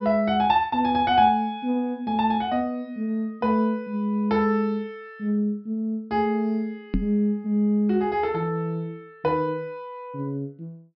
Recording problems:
low-pass filter; nothing above 5.6 kHz
knock on the microphone; at 7 s; peak +3 dB vs average level

